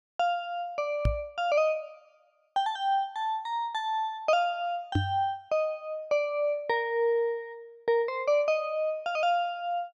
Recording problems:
knock on the microphone; at 1 s and at 5 s; peak +5 dB vs average level

